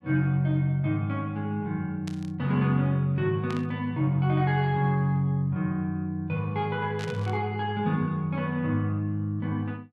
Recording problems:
burst of static; at 2 s, at 3.5 s and at 7 s; peak -8 dB vs average level

